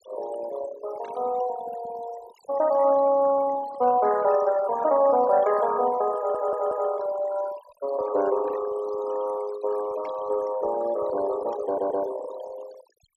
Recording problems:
denoising artefacts; signal-to-artefact ratio 16 dB
burst of static; 4 times, first at 1 s; peak -18 dB vs average level
audio stuttering; at 6 s and at 12 s

